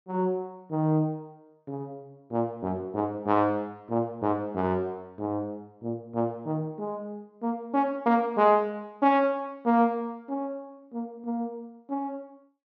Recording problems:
treble missing; nothing above 6.6 kHz

